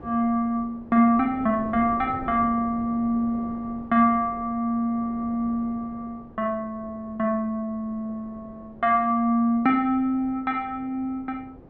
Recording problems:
wind noise; below 470 Hz, SNR 20 dB

